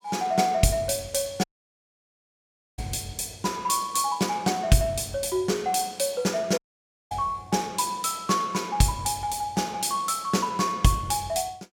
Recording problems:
audio cutting out; at 1.5 s for 1.5 s and at 6.5 s for 0.5 s

